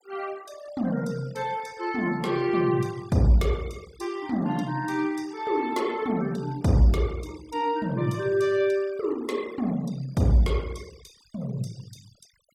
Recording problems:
noise reduction artefacts; signal-to-artefact ratio 22 dB

